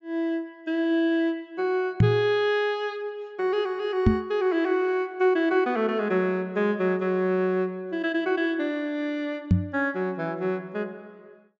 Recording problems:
low-pass filter; nothing above 8 kHz
microphone thump; at 2 s, at 4 s and at 9.5 s; peak +10 dB vs average level

